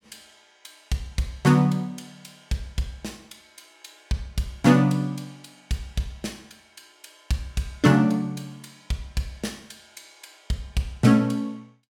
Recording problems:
none

